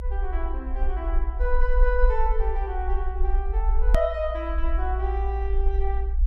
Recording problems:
rumble; below 56 Hz, SNR -3 dB
hard cut with a click; at 4 s

